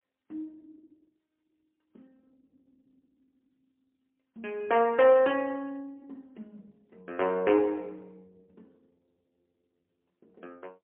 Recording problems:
phone line; 260 Hz to 3.4 kHz, AMR-NB, then MP3

